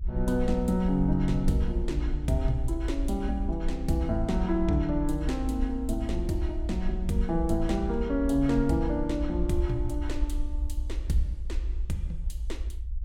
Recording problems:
low-frequency rumble; below 58 Hz, SNR 4 dB

